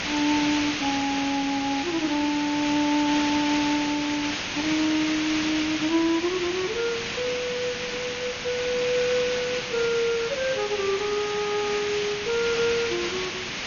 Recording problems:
codec artefacts; MP2, log-spectral distance 12 dB, nothing above 6.7 kHz
hiss; SNR 3 dB

